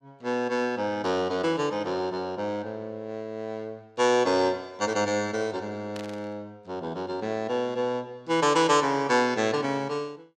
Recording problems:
static burst; at 6 s; peak -10 dB vs average level

